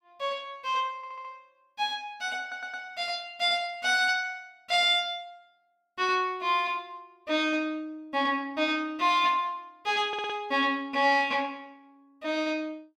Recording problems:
stutter; at 1 s, at 2.5 s and at 10 s

